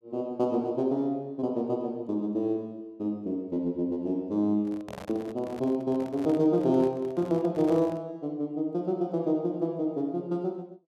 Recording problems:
handling noise; from 4.5 to 8 s; peak -7 dB vs average level

